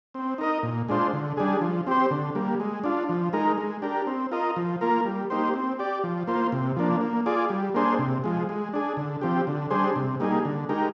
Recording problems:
none

